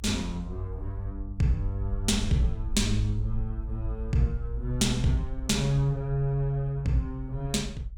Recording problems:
low-frequency rumble; below 56 Hz, SNR 7 dB

